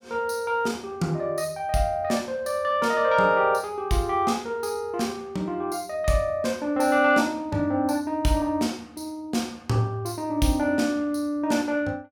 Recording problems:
none

